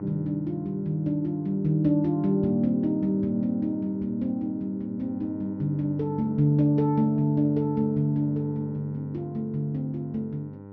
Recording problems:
low-pass filter; nothing above 6.2 kHz
hum; 50 Hz, harmonics up to 1.4 kHz, SNR 18 dB

